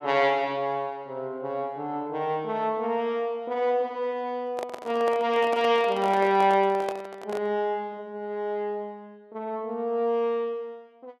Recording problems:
microphone handling noise; from 4.5 to 7.5 s; peak -3 dB vs average level

